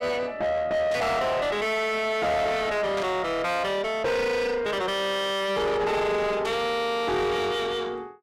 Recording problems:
distortion; soft clipping, signal-to-distortion ratio 5 dB
static burst; at 1 s, at 3 s and at 6.5 s; peak -7 dB vs average level

